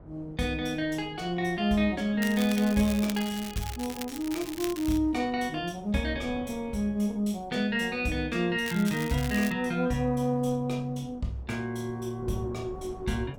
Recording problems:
wind on the microphone; below 390 Hz, SNR 20 dB
crackle; from 2 to 5 s and at 8.5 s; loose cable, SNR 11 dB

